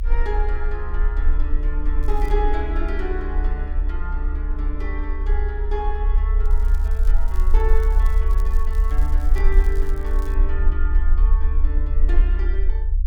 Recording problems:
low-frequency rumble; below 40 Hz, SNR -9 dB
crackle; at 2 s and from 6.5 to 10 s; loose cable, SNR 18 dB

